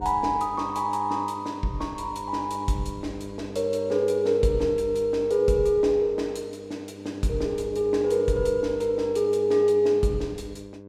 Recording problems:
hum; 50 Hz, harmonics up to 1.1 kHz, SNR 14 dB

